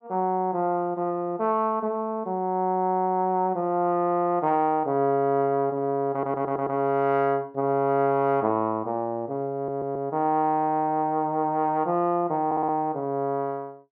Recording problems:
audio stuttering; at 6 s, at 9.5 s and at 12 s

